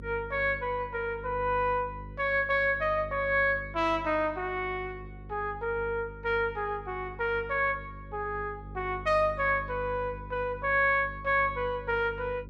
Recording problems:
hum; 50 Hz, harmonics up to 550 Hz, SNR 16 dB

